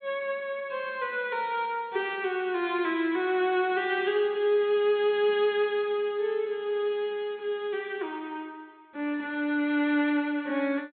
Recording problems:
low-pass filter; nothing above 4.2 kHz

